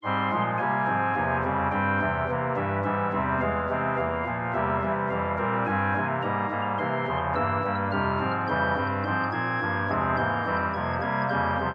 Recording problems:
none

